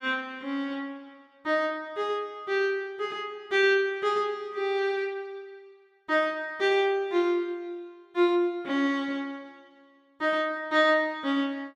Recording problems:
none

